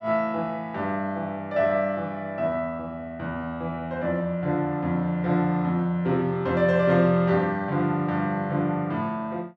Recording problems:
none

